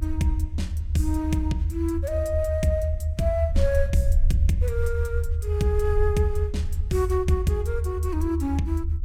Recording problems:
rumble; below 80 Hz, SNR 0 dB

